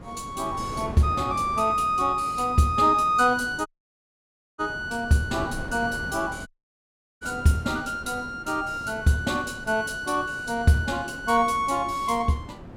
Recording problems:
wind on the microphone; below 480 Hz, SNR 16 dB
audio cutting out; at 3.5 s for 1 s and at 6.5 s for 0.5 s

